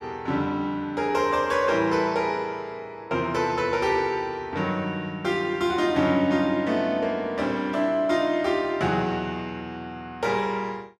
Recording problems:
none

